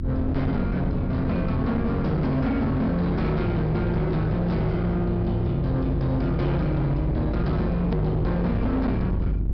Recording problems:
treble missing; nothing above 5.5 kHz
distortion; hard clipping, uneven, signal-to-distortion ratio 8 dB
hum; 50 Hz, harmonics up to 350 Hz, SNR 7 dB
low-frequency rumble; below 82 Hz, SNR 8 dB
hard cut with a click; at 8 s

